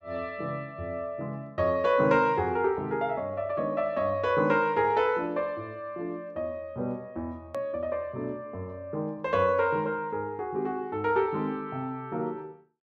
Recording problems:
edit click; at 7.5 s

